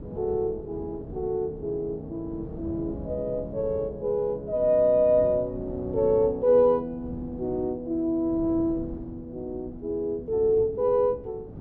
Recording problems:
wind on the microphone; below 280 Hz, SNR 16 dB

